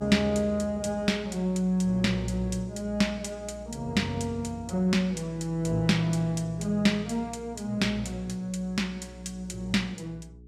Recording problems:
electrical hum; 60 Hz, harmonics up to 420 Hz, SNR 19 dB

